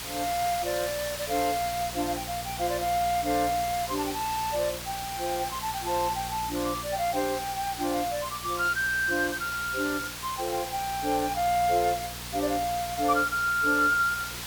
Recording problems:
electrical hum; 60 Hz, harmonics up to 960 Hz, SNR 17 dB
hiss; slope 0 dB per octave, SNR 7 dB

